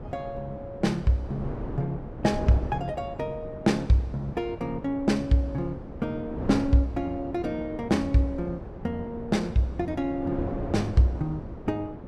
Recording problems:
wind on the microphone; below 410 Hz, SNR 10 dB

